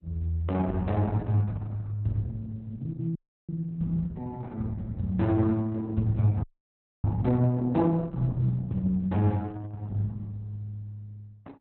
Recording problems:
codec artefacts; Opus, log-spectral distance 2 dB, nothing above 4 kHz
audio freezing; at 3 s and at 6.5 s for 0.5 s

